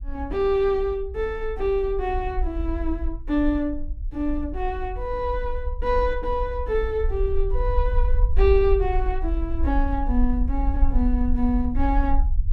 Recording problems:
rumble; below 54 Hz, SNR 3 dB

